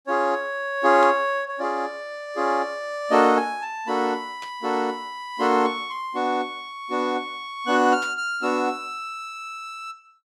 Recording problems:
burst of static; at 1 s, at 4.5 s and at 8 s; peak -10 dB vs average level

